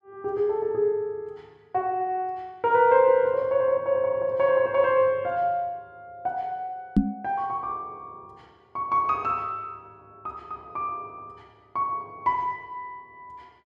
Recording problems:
microphone bump; at 7 s; peak +9 dB vs average level

